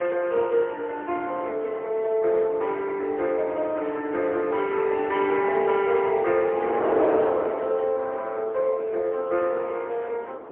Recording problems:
telephone audio; 320 Hz to 3.2 kHz, AMR-NB, then MP3
wind on the microphone; below 770 Hz, SNR 9 dB

